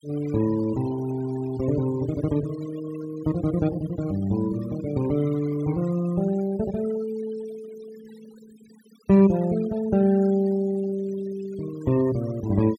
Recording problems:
noise reduction artefacts; signal-to-artefact ratio 19 dB

